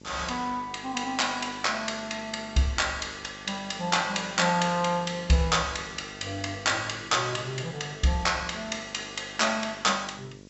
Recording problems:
treble missing; nothing above 7.7 kHz
hum; 50 Hz, harmonics up to 1.1 kHz, SNR 21 dB
hiss; slope +4 dB per octave, SNR 30 dB

